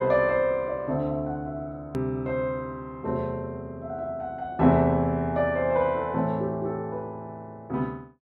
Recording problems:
hard cut with a click; at 2 s

